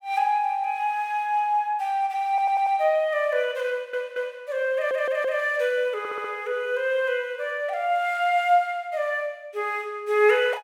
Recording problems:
audio stuttering; 4 times, first at 2.5 s

